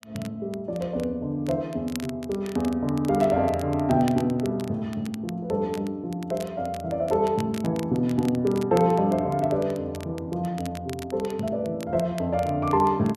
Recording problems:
crackle; vinyl, SNR 20 dB

